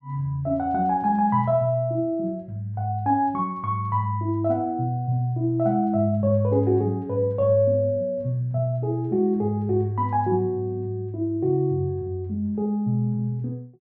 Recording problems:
none

